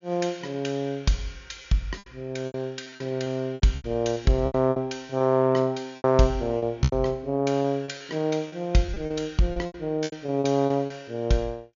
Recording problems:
low-pass filter; nothing above 7.1 kHz
lost packets; 12% of the sound replaced, filled with repeated pitch periods

